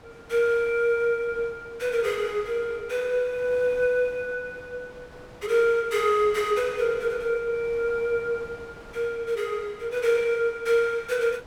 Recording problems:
wind on the microphone; below 1.2 kHz, SNR 22 dB

